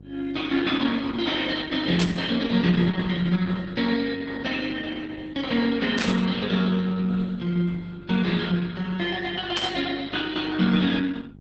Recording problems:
lossy codec; Opus, log-spectral distance 4 dB
mains hum; 50 Hz, harmonics up to 750 Hz, SNR 22 dB
burst of static; at 2 s, at 6 s and at 9.5 s; peak +2 dB vs average level

